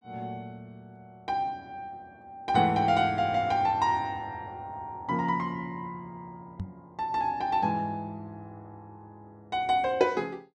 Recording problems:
microphone bump; at 6.5 s; peak -3 dB vs average level

